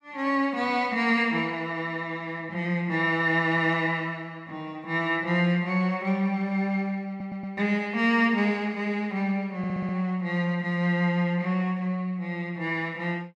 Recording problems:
audio stuttering; at 7 s and at 9.5 s

